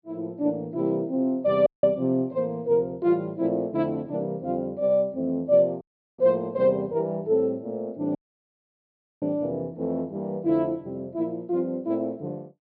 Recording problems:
low-pass filter; nothing above 5.5 kHz
audio cutting out; at 1.5 s, at 6 s and at 8 s for 1 s

